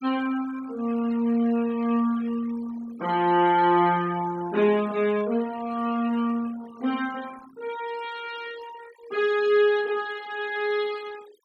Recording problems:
noise reduction artefacts; signal-to-artefact ratio 21 dB

